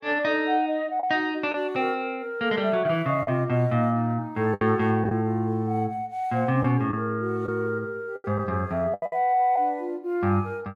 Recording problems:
packet loss; 4% of the sound replaced, filled with the last packet

